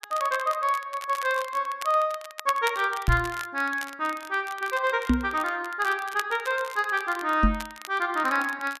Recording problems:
crackling; vinyl, SNR 15 dB
microphone bump; at 3 s, at 5 s and at 7.5 s; peak +8 dB vs average level

